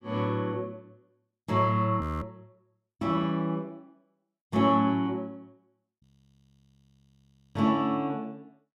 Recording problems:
frozen audio; at 2 s and at 6 s for 1.5 s

